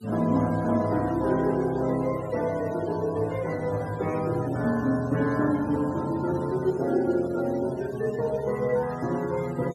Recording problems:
denoising artefacts; signal-to-artefact ratio 19 dB

